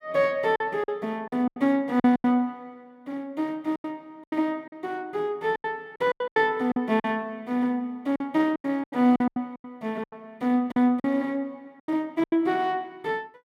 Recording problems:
packet loss; 12% of the sound replaced, filled with silence

